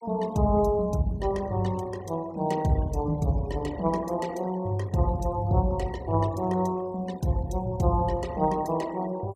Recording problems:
noise reduction artefacts; signal-to-artefact ratio 22 dB

